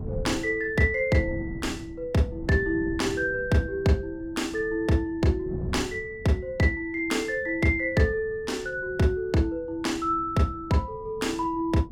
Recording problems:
wind noise; below 190 Hz, SNR 15 dB

